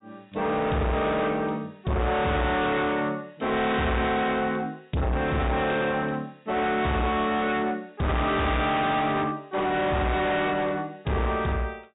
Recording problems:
treble missing; nothing above 4 kHz
distortion; soft clipping, signal-to-distortion ratio 6 dB

